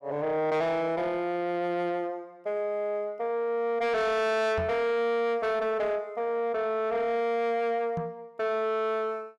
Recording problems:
distorted audio; soft clipping, signal-to-distortion ratio 10 dB
microphone bump; at 4.5 s and at 8 s; peak -1 dB vs average level

